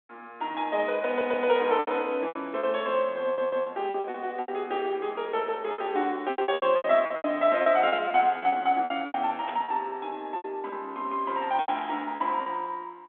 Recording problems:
telephone audio; 220 Hz to 3.5 kHz, G.726
lost packets; 13% of the sound replaced, filled with repeated pitch periods
stutter; at 1 s and at 3 s
static burst; at 9.5 s and at 12 s; peak -8 dB vs average level

